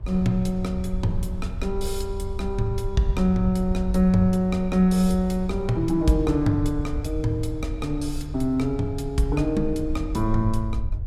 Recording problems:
low-frequency rumble; below 72 Hz, SNR 9 dB
wind noise; below 660 Hz, SNR 27 dB

